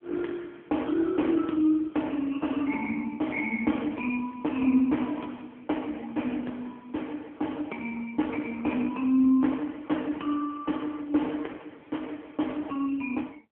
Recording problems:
telephone audio; 170 Hz to 3.4 kHz, AMR-NB

